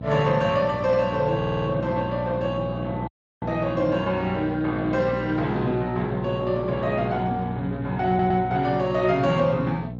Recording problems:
lossy codec; MP3, then Speex, log-spectral distance 2 dB
hum; 60 Hz, harmonics up to 780 Hz, SNR 8 dB
audio stuttering; at 1.5 s and at 8 s
dropout; at 3 s

